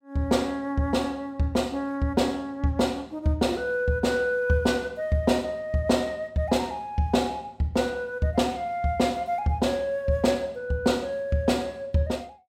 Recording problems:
none

